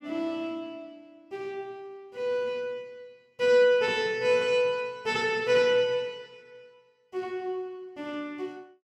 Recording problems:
none

